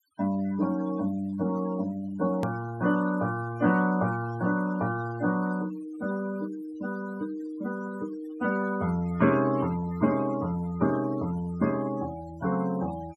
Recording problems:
denoising artefacts; signal-to-artefact ratio 17 dB
edit click; at 2.5 s

